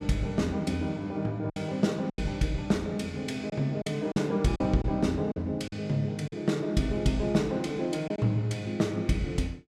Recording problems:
lost packets; 5% of the sound replaced, filled with silence

